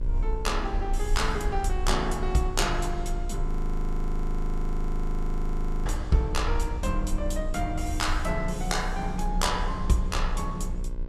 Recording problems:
hum; 60 Hz, harmonics up to 2 kHz, SNR 12 dB
low-frequency rumble; below 42 Hz, strongest tone 30 Hz, SNR 3 dB
frozen audio; at 3.5 s for 2.5 s

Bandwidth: 14.5 kHz